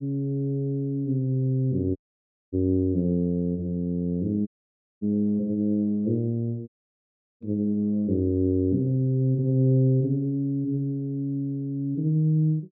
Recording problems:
dropout; at 2 s for 0.5 s, at 4.5 s for 0.5 s and at 6.5 s for 0.5 s

